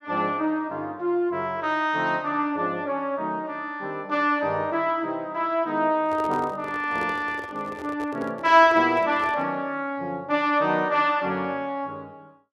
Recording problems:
microphone handling noise; from 6 to 9.5 s; peak -7 dB vs average level

